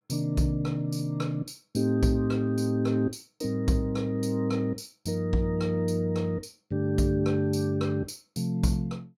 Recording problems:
none

